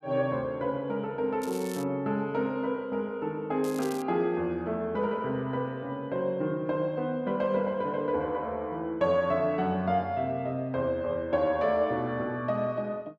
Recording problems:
crackling; at 1.5 s and at 3.5 s; loose cable, SNR 17 dB

